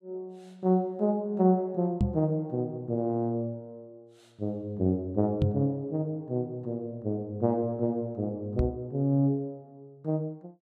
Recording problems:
microphone thump; at 2 s, at 5.5 s and at 8.5 s; peak +7 dB vs average level

